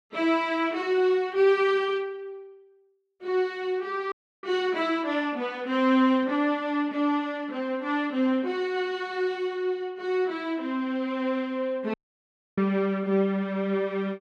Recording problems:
dropout; at 4 s and at 12 s for 0.5 s

